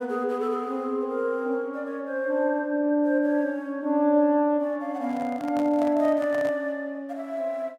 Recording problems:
microphone handling noise; from 5 to 6.5 s; peak -8 dB vs average level

